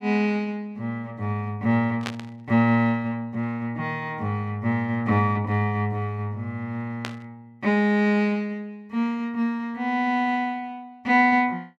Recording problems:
burst of static; at 2 s and at 7 s; peak -2 dB vs average level

